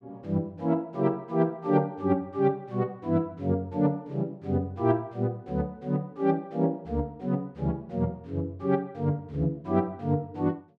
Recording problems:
none

